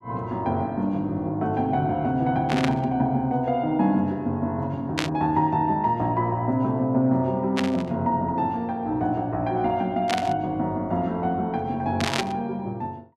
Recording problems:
burst of static; 5 times, first at 2.5 s; peak +3 dB vs average level

